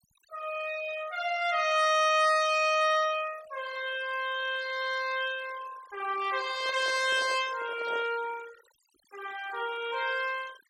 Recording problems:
noise reduction artefacts; signal-to-artefact ratio 17 dB
microphone handling noise; from 6.5 to 8 s; peak -10 dB vs average level

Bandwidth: 16.5 kHz